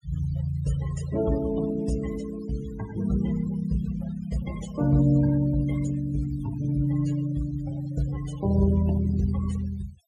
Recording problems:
denoising artefacts; signal-to-artefact ratio 16 dB

